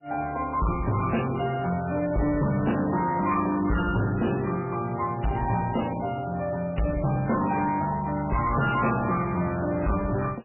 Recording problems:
lossy compression; AAC, then MP3, log-spectral distance 5 dB, nothing above 2.4 kHz
distortion; soft clipping, signal-to-distortion ratio 7 dB

